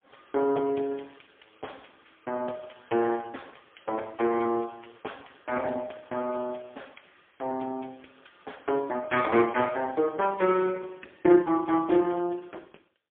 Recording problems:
phone line; 280 Hz to 3.3 kHz, AMR-NB, then MP3

